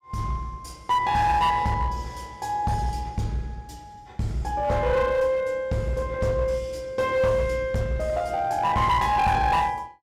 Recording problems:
distorted audio; hard clipping, uneven, signal-to-distortion ratio 11 dB

